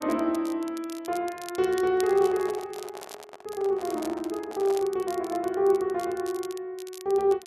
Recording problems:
crackling; vinyl, SNR 19 dB
microphone handling noise; from 2 to 5 s; peak -9 dB vs average level

